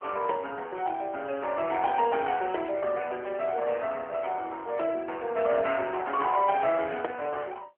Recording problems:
telephone audio; 300 Hz to 3.3 kHz, AMR-NB

